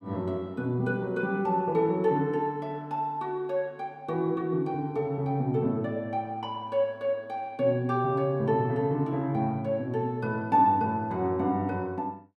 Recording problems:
none

